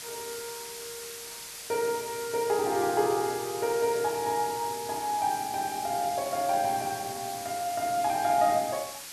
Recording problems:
background hiss; slope +2 dB per octave, SNR 10 dB

